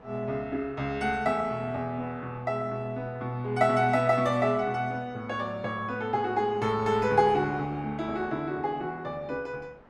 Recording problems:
wind noise; below 1.1 kHz, SNR 23 dB

